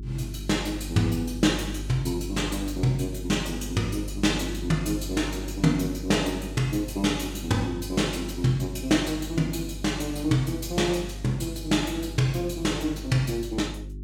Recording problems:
electrical hum; 50 Hz, harmonics up to 400 Hz, SNR 10 dB

